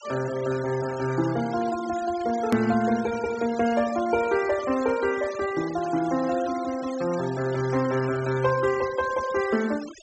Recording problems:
treble cut off; nothing above 8 kHz
noise reduction artefacts; signal-to-artefact ratio 16 dB
hard cut with a click; at 2.5 s

